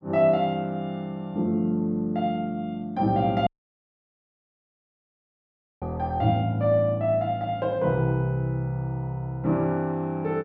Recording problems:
dropout; at 3.5 s for 2.5 s

